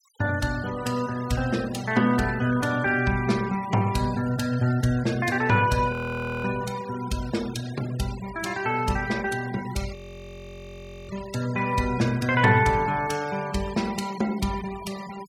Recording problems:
noise reduction artefacts; signal-to-artefact ratio 17 dB
frozen audio; at 6 s for 0.5 s and at 10 s for 1 s

